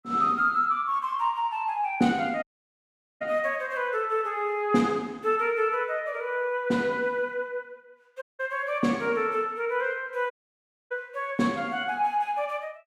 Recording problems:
dropout; at 2.5 s for 1 s, at 8 s and at 10 s for 0.5 s

